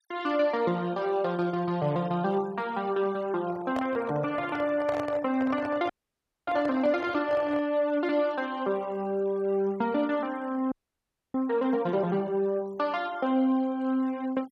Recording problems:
denoising artefacts; signal-to-artefact ratio 21 dB
microphone handling noise; from 3.5 to 7.5 s; peak -3 dB vs average level
frozen audio; at 6 s for 0.5 s and at 11 s for 0.5 s

